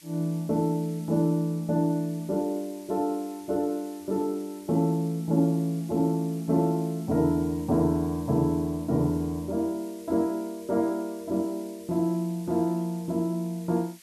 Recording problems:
hiss; SNR 23 dB

